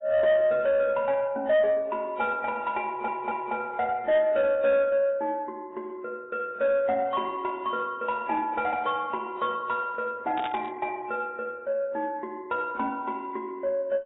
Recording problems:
lossy compression; AAC, log-spectral distance 2 dB
distorted audio; soft clipping, signal-to-distortion ratio 12 dB
audio stuttering; at 3 s
burst of static; at 10 s; peak -6 dB vs average level

